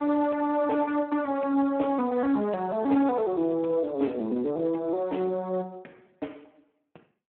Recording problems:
phone line; 190 Hz to 3.1 kHz, Speex

